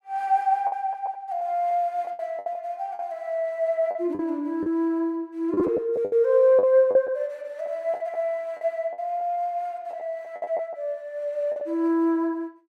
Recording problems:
lost packets; 8% of the sound replaced, filled with the last packet

